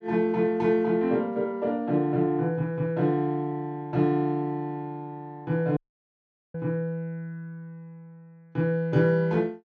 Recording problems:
dropout; at 6 s for 1 s

